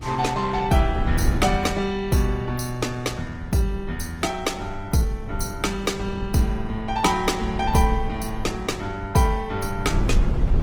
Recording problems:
codec artefacts; Opus, log-spectral distance 3 dB, nothing above 19 kHz
wind on the microphone; below 110 Hz, SNR 7 dB

